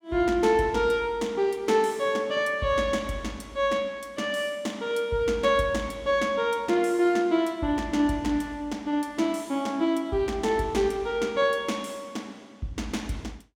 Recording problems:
none

